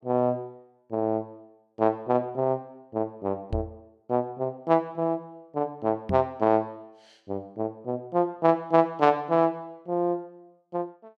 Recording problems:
microphone thump; at 3.5 s and at 6 s; peak 0 dB vs average level

